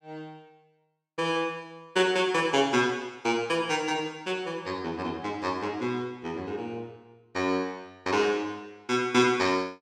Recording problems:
none

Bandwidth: 16 kHz